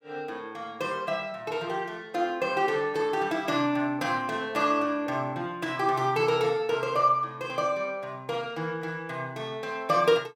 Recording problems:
none

